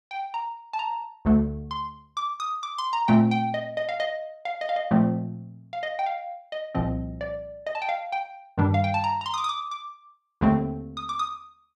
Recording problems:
none

